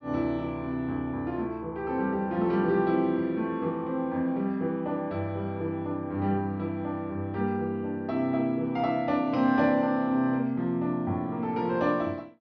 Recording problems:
treble missing; nothing above 6 kHz

